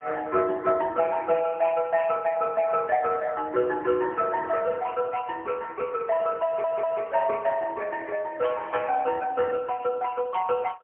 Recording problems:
phone line; 320 Hz to 3.1 kHz, AMR-NB, then MP3
audio stuttering; at 6.5 s

